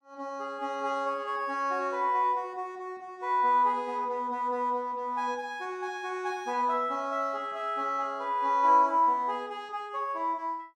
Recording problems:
none

